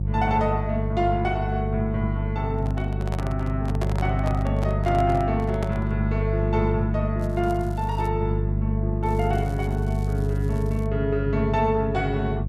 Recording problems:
hum; 50 Hz, harmonics up to 350 Hz, SNR 0 dB
microphone handling noise; from 2.5 to 6 s; peak -1 dB vs average level
crackle; at 7 s and from 9 to 11 s; loose cable, SNR 25 dB

